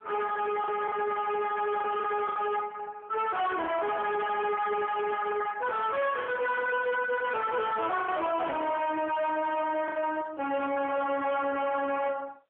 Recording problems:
telephone audio; 340 Hz to 3.6 kHz, AMR-NB
distorted audio; soft clipping, signal-to-distortion ratio 7 dB
lost packets; 4% of the sound replaced, filled with the last packet

